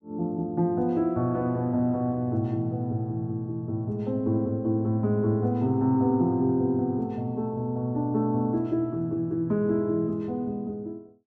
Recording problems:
none

